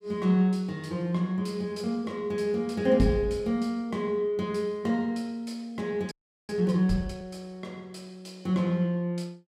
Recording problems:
audio freezing; at 6 s

